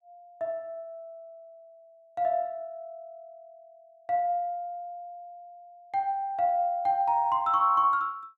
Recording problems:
none

